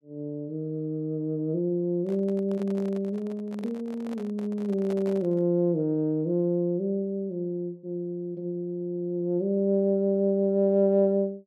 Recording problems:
microphone handling noise; from 2 to 5.5 s; peak -10 dB vs average level

